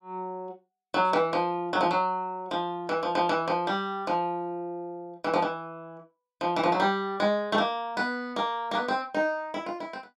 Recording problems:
none

